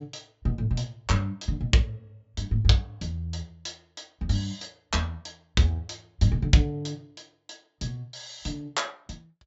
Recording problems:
treble missing; nothing above 8 kHz

